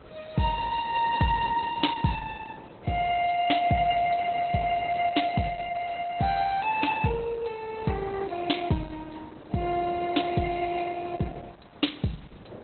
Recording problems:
lossy compression; Opus, log-spectral distance 7 dB, nothing above 4.1 kHz
background hiss; SNR 27 dB
wind on the microphone; below 620 Hz, SNR 21 dB

